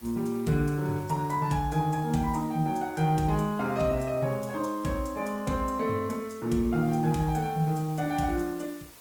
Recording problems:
lossy codec; Opus, log-spectral distance 4 dB
hiss; slope -2 dB per octave, SNR 23 dB

